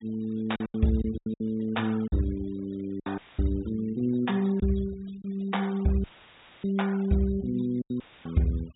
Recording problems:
treble missing; nothing above 4 kHz
denoising artefacts; signal-to-artefact ratio 24 dB
packet loss; 7% of the sound replaced, filled with silence
audio cutting out; at 3 s, at 6 s for 0.5 s and at 8 s; filled with static

